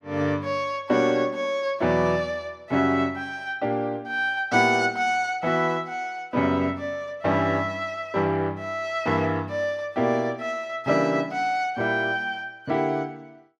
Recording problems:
none

